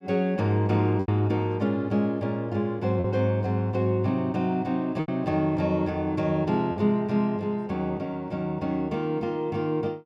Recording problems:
lost packets; 2% of the sound replaced, filled with repeated pitch periods

